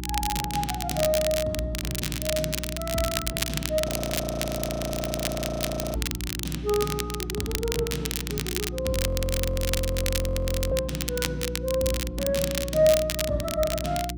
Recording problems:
mains hum; 60 Hz, harmonics up to 360 Hz, SNR 7 dB
crackling; vinyl, SNR 3 dB
frozen audio; at 4 s for 2 s and at 9 s for 1.5 s

